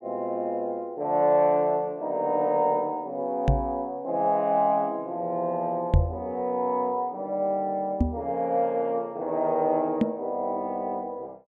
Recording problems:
knock on the microphone; 4 times, first at 3.5 s; peak +9 dB vs average level

